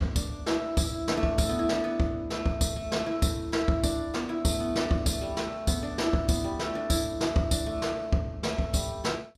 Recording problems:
none

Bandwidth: 14.5 kHz